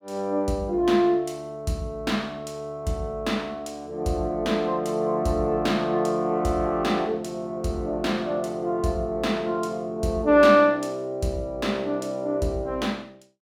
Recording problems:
none

